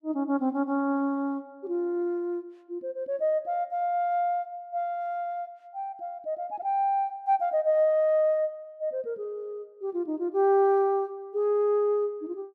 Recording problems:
none

